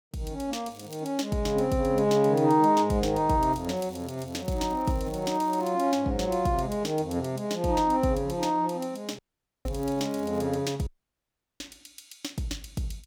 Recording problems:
crackle; at 0.5 s, from 3.5 to 5.5 s and at 9.5 s; loose cable, SNR 27 dB
dropout; at 9 s and at 11 s for 0.5 s

